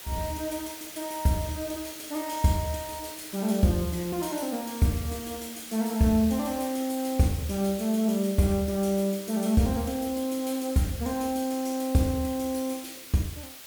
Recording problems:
hiss; slope +1 dB per octave, SNR 13 dB

